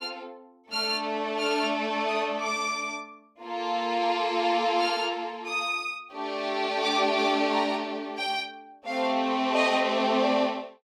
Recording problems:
none

